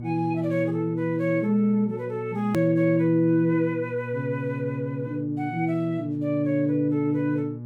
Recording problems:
hum; 60 Hz, harmonics up to 600 Hz, SNR 12 dB
edit click; at 2.5 s

